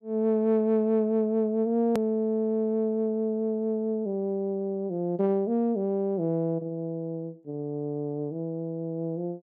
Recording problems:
click at an edit; at 2 s

